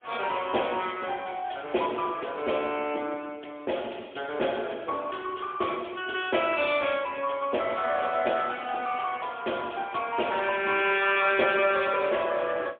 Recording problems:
phone line; 260 Hz to 3.5 kHz, AMR-NB, then MP3

